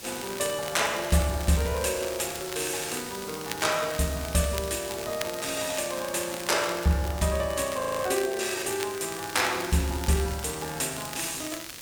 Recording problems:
hiss; SNR 13 dB
crackling; vinyl, SNR 12 dB
frozen audio; at 8 s

